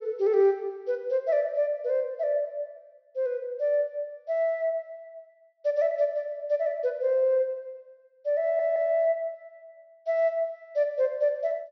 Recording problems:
treble cut off; nothing above 6 kHz
audio stuttering; at 8.5 s

